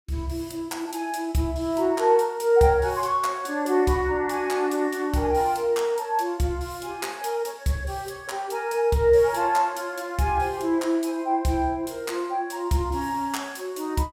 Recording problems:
none

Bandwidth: 16.5 kHz